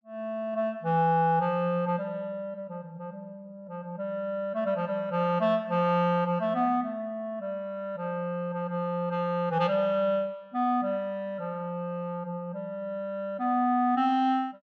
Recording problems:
none

